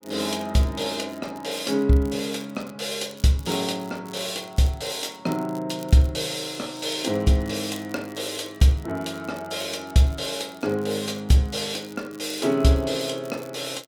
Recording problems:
crackle; vinyl, SNR 24 dB

